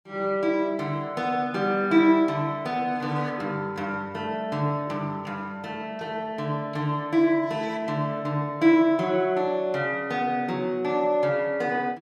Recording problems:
none

